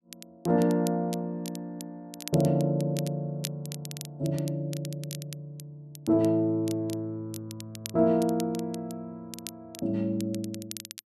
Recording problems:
crackling; vinyl, SNR 15 dB

